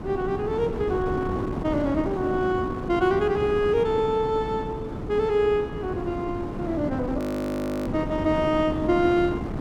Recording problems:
wind noise; below 390 Hz, SNR 6 dB
frozen audio; at 7 s for 0.5 s

